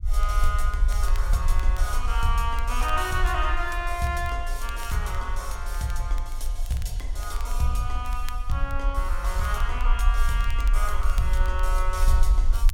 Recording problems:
rumble; below 46 Hz, SNR -1 dB
crackle; vinyl, SNR 20 dB

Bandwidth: 17 kHz